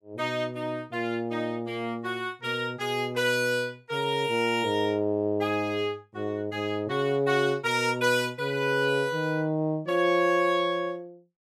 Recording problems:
none

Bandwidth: 15 kHz